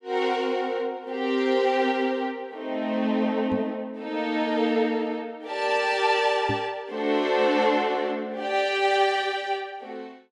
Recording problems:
microphone thump; at 3.5 s and at 6.5 s; peak -2 dB vs average level

